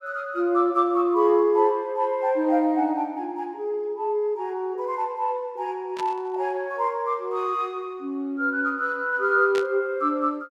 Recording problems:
burst of static; at 6 s and at 9.5 s; peak -6 dB vs average level

